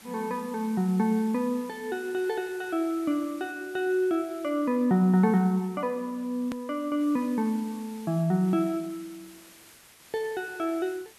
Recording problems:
background hiss; slope -1 dB per octave, SNR 23 dB
click at an edit; at 6.5 s

